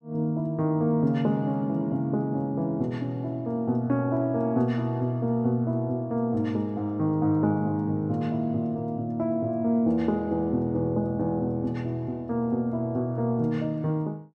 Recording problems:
none

